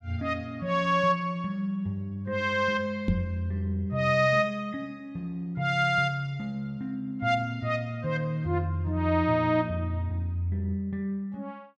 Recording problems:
knock on the microphone; at 3 s; peak +6 dB vs average level

